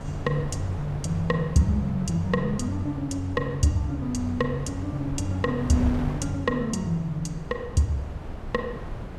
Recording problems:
wind noise; below 340 Hz, SNR 10 dB

